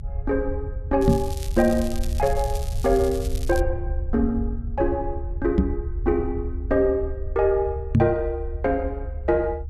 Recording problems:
rumble; below 72 Hz, SNR 6 dB
crackling; from 1 to 3.5 s; loose cable, SNR 16 dB
microphone bump; at 1 s, at 5.5 s and at 8 s; peak +9 dB vs average level

